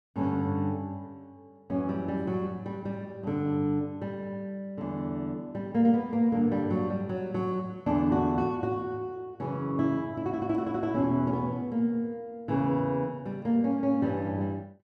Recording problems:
none

